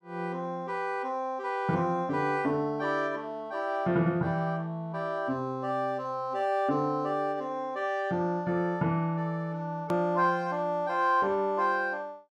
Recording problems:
hard cut with a click; at 10 s

